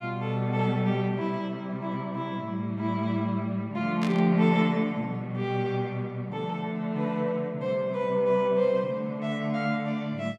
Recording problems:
burst of static; at 4 s; peak -4 dB vs average level

